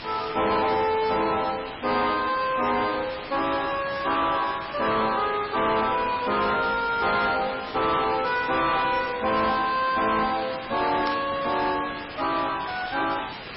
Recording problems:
lossy compression; MP3, log-spectral distance 12 dB, nothing above 5.3 kHz
distorted audio; soft clipping, signal-to-distortion ratio 6 dB
background hiss; SNR 7 dB
static burst; at 11 s; peak -11 dB vs average level

